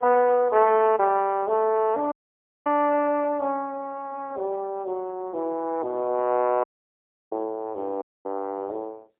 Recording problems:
telephone audio; 300 Hz to 2.8 kHz, AMR-NB, then MP3
audio cutting out; at 2 s for 0.5 s, at 6.5 s for 0.5 s and at 8 s

